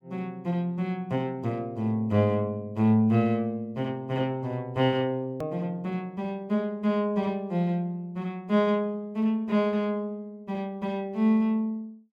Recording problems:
edit click; at 5.5 s

